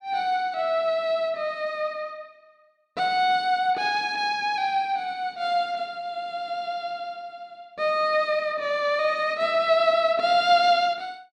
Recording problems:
none

